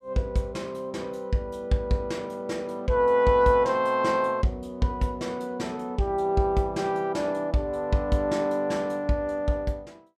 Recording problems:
none

